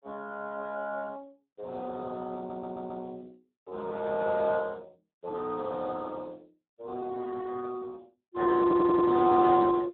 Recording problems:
phone line; 260 Hz to 2.1 kHz, Speex
stutter; at 2.5 s and at 8.5 s

